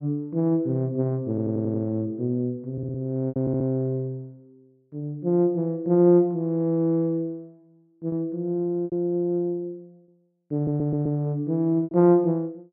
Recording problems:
packet loss; 3% of the sound replaced, filled with repeated pitch periods
audio stuttering; 4 times, first at 1.5 s

